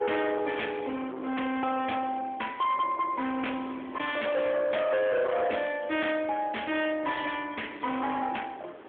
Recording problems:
phone line; 280 Hz to 3.5 kHz, AMR-NB
distortion; hard clipping, signal-to-distortion ratio 8 dB
wind on the microphone; below 1.6 kHz, SNR 17 dB

